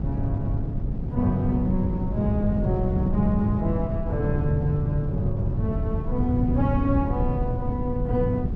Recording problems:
wind on the microphone; below 150 Hz, SNR 1 dB

